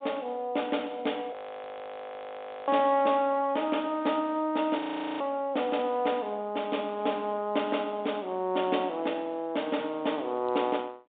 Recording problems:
telephone audio; 260 Hz to 3.6 kHz, G.726
audio freezing; at 1.5 s for 1.5 s and at 5 s

